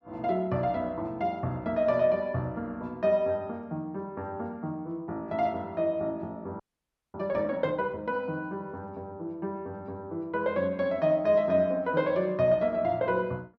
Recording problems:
frozen audio; at 6.5 s for 0.5 s

